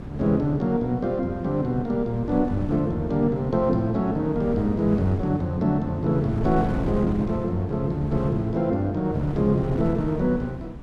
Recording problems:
wind on the microphone; below 240 Hz, SNR 10 dB

